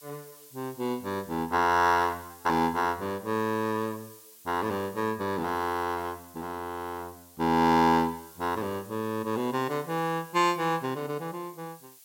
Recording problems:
hiss; slope +3 dB per octave, SNR 22 dB

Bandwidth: 16.5 kHz